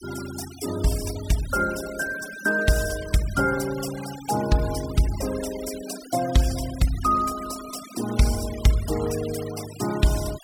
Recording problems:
denoising artefacts; signal-to-artefact ratio 13 dB

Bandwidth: 17 kHz